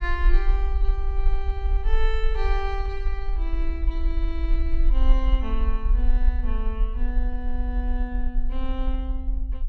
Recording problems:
low-frequency rumble; below 44 Hz, strongest tone 22 Hz, SNR -8 dB

